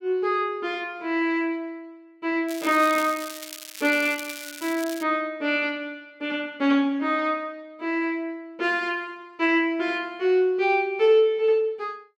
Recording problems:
crackling; from 2.5 to 5 s; loose cable, SNR 13 dB

